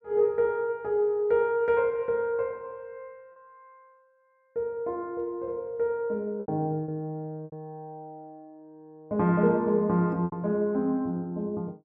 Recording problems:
packet loss; 3% of the sound replaced, filled with repeated pitch periods

